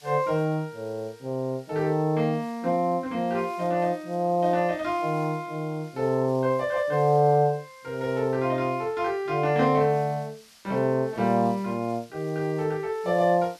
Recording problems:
hiss; slope +3 dB per octave, SNR 27 dB

